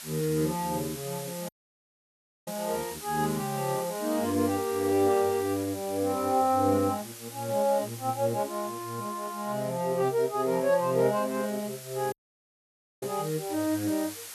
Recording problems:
background hiss; slope +2 dB per octave, SNR 13 dB
dropout; at 1.5 s for 1 s and at 12 s for 1 s

